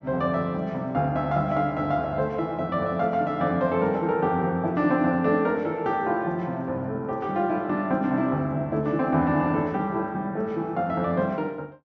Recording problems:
low-pass filter; nothing above 8 kHz

